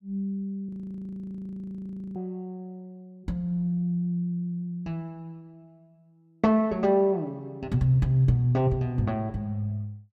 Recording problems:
frozen audio; at 0.5 s for 1.5 s

